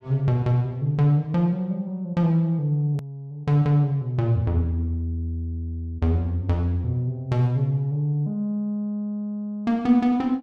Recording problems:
hard cut with a click; at 3 s

